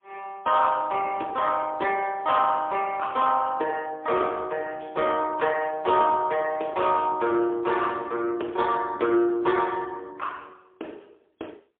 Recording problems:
phone line; 300 Hz to 3.4 kHz, AMR-NB, then MP3

